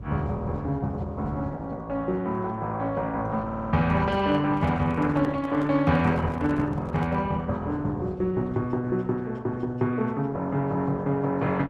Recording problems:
codec artefacts; Opus, log-spectral distance 2 dB
rumble; below 200 Hz, SNR 15 dB
audio stuttering; at 3.5 s
handling noise; from 4 to 7.5 s; peak -9 dB vs average level

